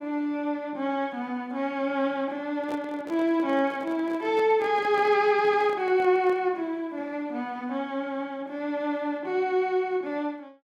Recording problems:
handling noise; from 2.5 to 6.5 s; peak -8 dB vs average level

